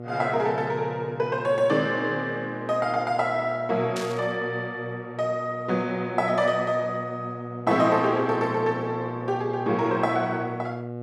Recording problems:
hum; 60 Hz, harmonics up to 1.3 kHz, SNR 11 dB
static burst; at 4 s; peak -5 dB vs average level

